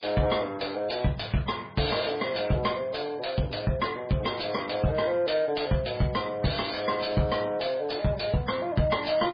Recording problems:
codec artefacts; MP3, log-spectral distance 6 dB, nothing above 4.8 kHz
distorted audio; soft clipping, signal-to-distortion ratio 12 dB

